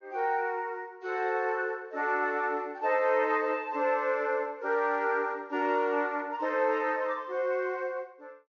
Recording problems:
low-pass filter; nothing above 6.6 kHz

